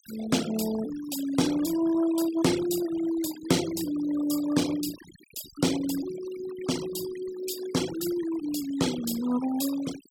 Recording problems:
noise reduction artefacts; signal-to-artefact ratio 13 dB

